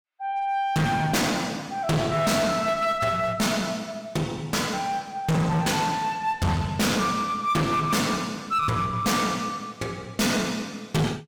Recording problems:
distortion; hard clipping, uneven, signal-to-distortion ratio 5 dB

